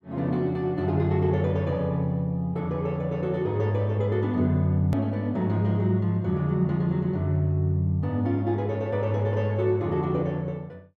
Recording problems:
edit click; at 5 s

